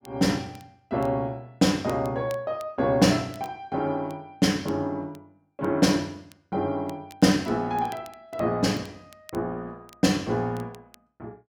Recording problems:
crackling; vinyl, SNR 27 dB

